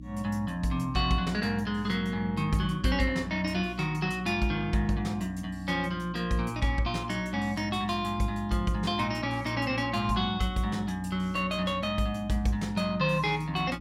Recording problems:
mains hum; 60 Hz, harmonics up to 300 Hz, SNR 14 dB

